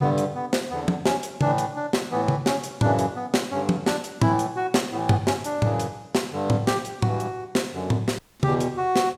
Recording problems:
dropout; at 8 s

